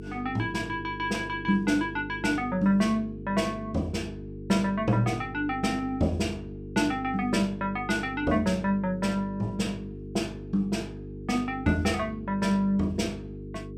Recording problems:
electrical hum; 50 Hz, harmonics up to 450 Hz, SNR 12 dB

